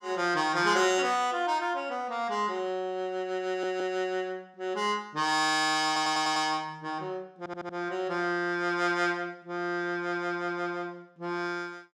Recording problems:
audio stuttering; at 3.5 s, at 6 s and at 7.5 s

